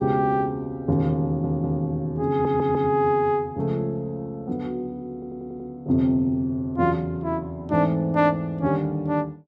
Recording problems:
stutter; at 1 s, at 2.5 s and at 5 s

